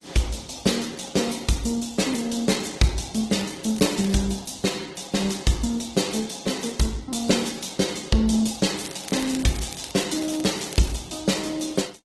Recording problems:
lossy codec; MP3, then Opus, log-spectral distance 8 dB, nothing above 12 kHz
crackling; at 3.5 s and from 9 to 11 s; loose cable, SNR 15 dB

